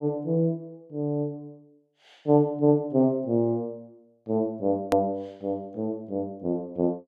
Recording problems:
click at an edit; at 5 s

